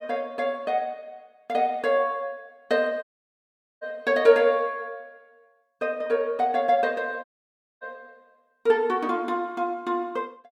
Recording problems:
audio cutting out; at 3 s for 1 s and at 7 s for 0.5 s

